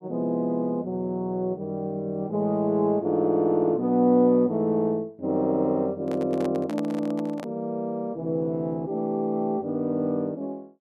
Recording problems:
handling noise; from 6 to 7.5 s; peak -6 dB vs average level

